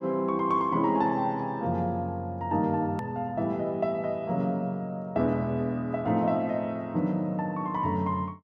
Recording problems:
edit click; at 3 s

